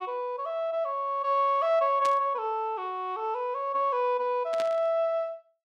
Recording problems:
burst of static; at 2 s and at 4.5 s; peak -7 dB vs average level

